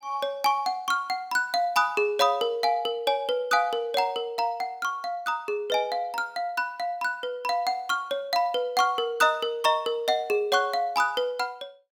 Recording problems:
none

